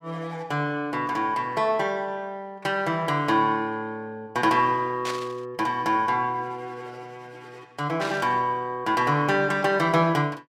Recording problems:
static burst; at 5 s and at 8 s; peak -4 dB vs average level

